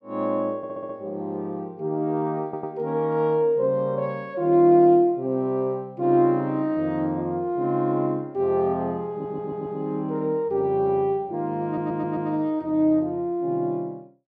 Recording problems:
audio stuttering; 4 times, first at 0.5 s

